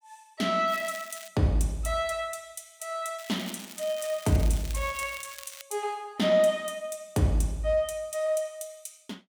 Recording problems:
crackling; at 0.5 s and from 3 to 5.5 s; loose cable, SNR 15 dB

